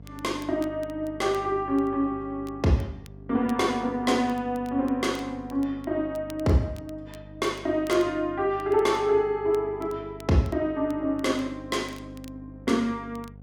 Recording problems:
hum; 50 Hz, harmonics up to 700 Hz, SNR 19 dB
crackling; vinyl, SNR 27 dB

